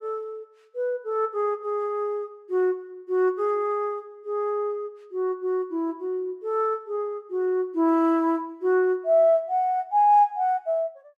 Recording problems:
none

